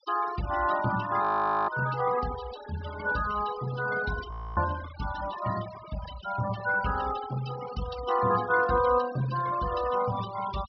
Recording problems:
treble missing; nothing above 5.5 kHz
denoising artefacts; signal-to-artefact ratio 14 dB
audio freezing; at 1 s and at 4.5 s

